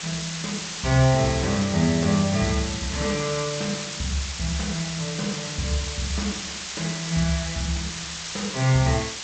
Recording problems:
lossy compression; G.722, log-spectral distance 18 dB, nothing above 8 kHz
hiss; slope +2 dB per octave, SNR 6 dB

